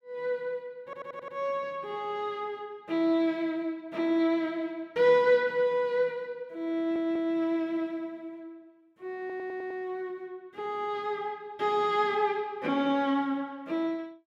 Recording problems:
stutter; at 1 s, at 7 s and at 9 s

